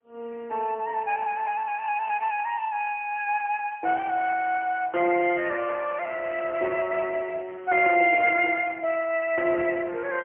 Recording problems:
phone line; 260 Hz to 3.3 kHz, AMR-NB, then MP3

